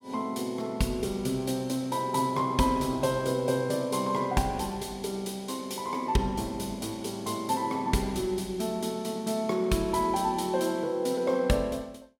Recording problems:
none

